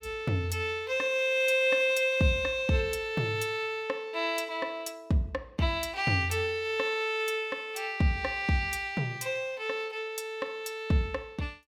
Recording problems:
none

